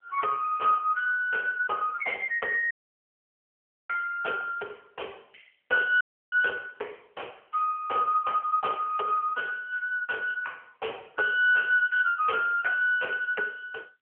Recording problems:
telephone audio; 370 Hz to 3.2 kHz, AMR-NB
audio cutting out; at 2.5 s for 1 s and at 6 s

